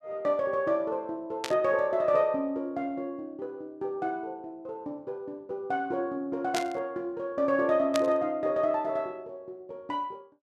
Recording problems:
burst of static; at 1.5 s, at 6.5 s and at 8 s; peak +1 dB vs average level

